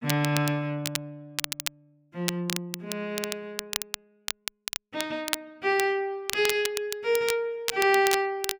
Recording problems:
crackling; vinyl, SNR 6 dB

